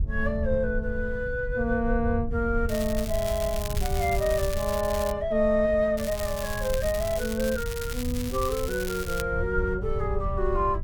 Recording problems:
wind on the microphone; below 86 Hz, SNR 7 dB
crackle; from 2.5 to 5 s and from 6 to 9 s; loose cable, SNR 10 dB

